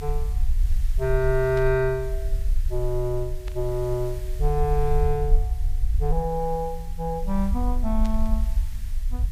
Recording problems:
hiss; SNR 22 dB
rumble; below 52 Hz, SNR 2 dB
burst of static; at 1.5 s, at 3.5 s and at 8 s; peak -12 dB vs average level

